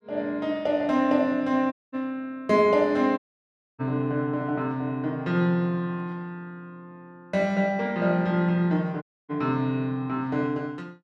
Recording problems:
dropout; at 1.5 s, at 3 s for 0.5 s and at 9 s

